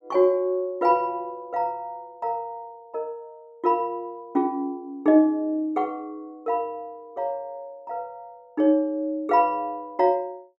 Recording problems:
none

